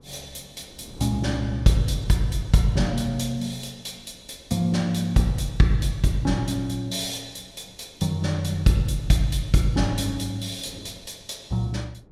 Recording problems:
wind noise; below 340 Hz, SNR 24 dB

